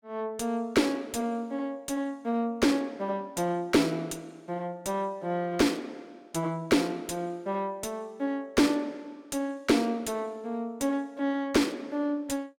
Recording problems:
distortion; soft clipping, signal-to-distortion ratio 10 dB

